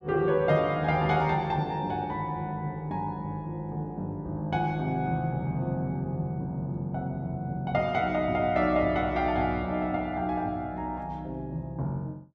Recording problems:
none

